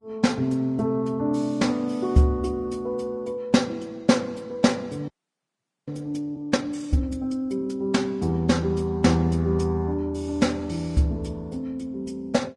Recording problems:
codec artefacts; Vorbis, log-spectral distance 2 dB, nothing above 10.1 kHz
audio freezing; at 5 s for 1 s

